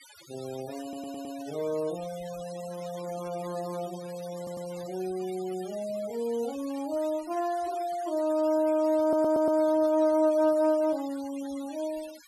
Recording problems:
noise reduction artefacts; signal-to-artefact ratio 19 dB
stutter; at 1 s, at 4.5 s and at 9 s

